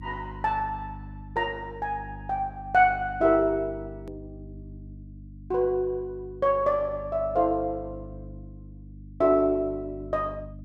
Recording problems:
hum; 50 Hz, harmonics up to 300 Hz, SNR 16 dB
edit click; at 4 s

